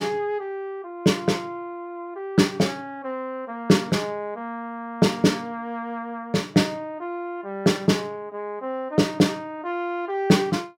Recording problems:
none

